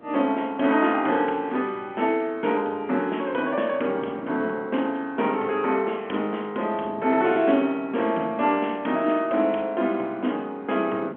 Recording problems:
telephone audio; 190 Hz to 3.3 kHz, G.711
wind on the microphone; below 520 Hz, SNR 19 dB

